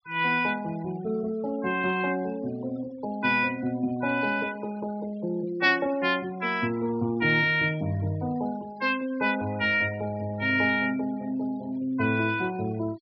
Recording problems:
treble missing; nothing above 5.5 kHz
noise reduction artefacts; signal-to-artefact ratio 23 dB

